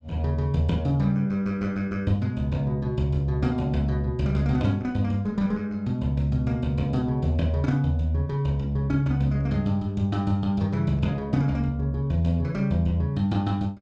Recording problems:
none

